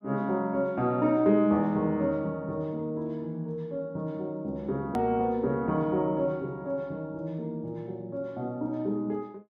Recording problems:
edit click; at 5 s

